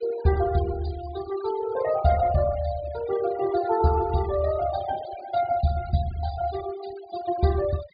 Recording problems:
treble missing; nothing above 4.8 kHz
noise reduction artefacts; signal-to-artefact ratio 14 dB

